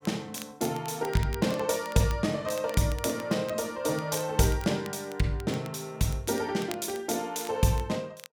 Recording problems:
crackle; vinyl, SNR 18 dB

